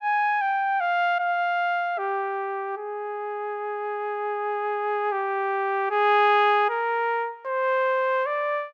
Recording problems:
none

